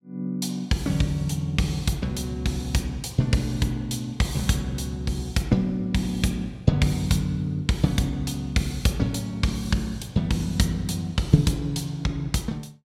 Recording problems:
none

